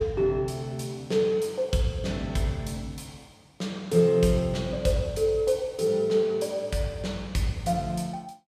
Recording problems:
none

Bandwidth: 15 kHz